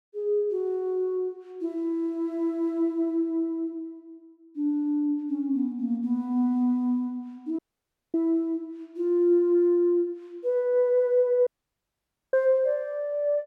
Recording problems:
dropout; at 7.5 s for 0.5 s and at 11 s for 1 s

